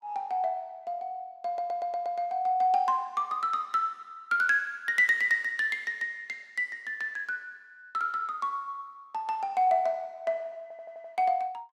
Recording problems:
audio stuttering; at 1.5 s and at 11 s

